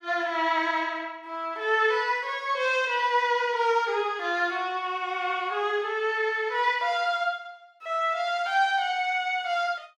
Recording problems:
none

